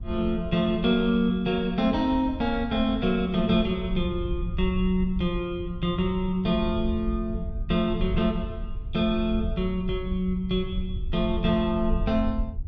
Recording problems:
wind on the microphone; below 78 Hz, SNR 9 dB

